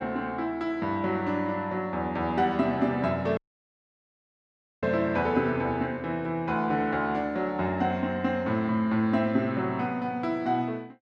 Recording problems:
dropout; at 3.5 s for 1.5 s

